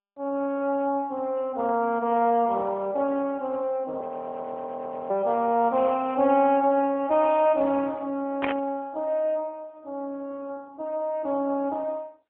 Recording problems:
telephone audio; 240 Hz to 3.3 kHz, AMR-NB
frozen audio; at 4 s for 1 s
burst of static; at 8.5 s; peak +1 dB vs average level

